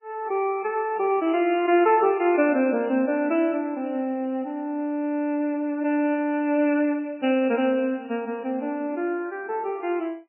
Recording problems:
lossy codec; MP3, log-spectral distance 2 dB, nothing above 2.4 kHz

